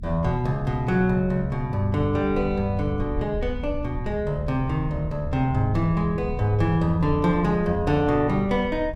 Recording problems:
low-frequency rumble; below 90 Hz, SNR 11 dB

